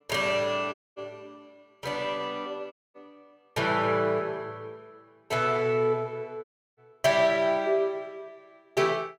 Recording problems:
audio cutting out; at 0.5 s, at 2.5 s and at 6.5 s

